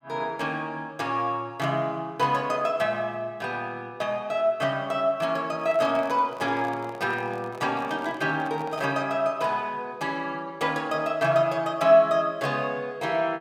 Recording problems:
microphone handling noise; from 5.5 to 9 s; peak -9 dB vs average level

